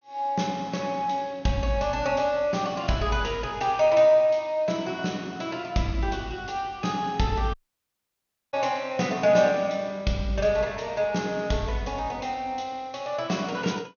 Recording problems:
treble missing; nothing above 6.5 kHz
audio cutting out; at 7.5 s for 1 s

